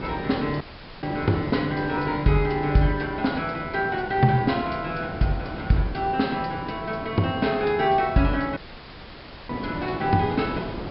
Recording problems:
treble missing; nothing above 5.2 kHz
background hiss; slope -8 dB per octave, SNR 10 dB
audio cutting out; at 0.5 s and at 8.5 s for 1 s

